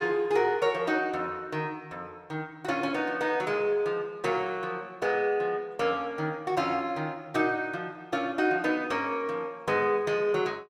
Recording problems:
none

